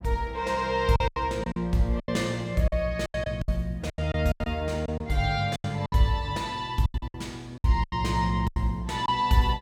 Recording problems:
packet loss; 13% of the sound replaced, filled with silence

